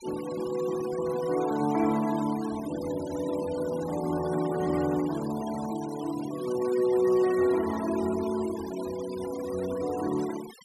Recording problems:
denoising artefacts; signal-to-artefact ratio 16 dB

